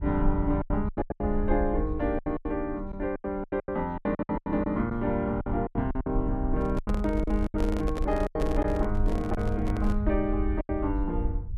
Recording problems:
low-frequency rumble; below 66 Hz, SNR 5 dB
lost packets; 14% of the sound replaced, filled with silence
handling noise; from 6.5 to 10 s; peak -1 dB vs average level

